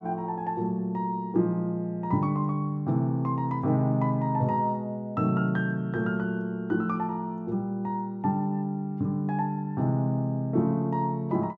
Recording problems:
none

